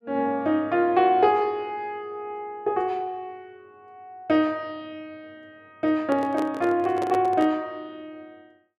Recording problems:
handling noise; from 6 to 7.5 s; peak -3 dB vs average level

